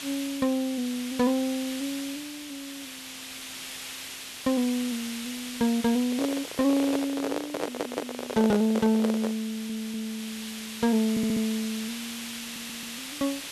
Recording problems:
background hiss; SNR 9 dB
microphone handling noise; from 6 to 9.5 s; peak +1 dB vs average level
stutter; 4 times, first at 7.5 s

